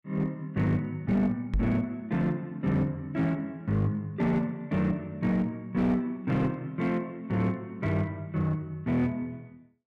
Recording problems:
distortion; hard clipping, uneven, signal-to-distortion ratio 11 dB
microphone thump; at 1.5 s; peak +3 dB vs average level

